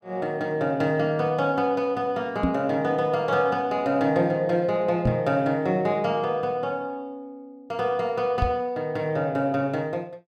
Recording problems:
knock on the microphone; at 2.5 s, at 5 s and at 8.5 s; peak +4 dB vs average level

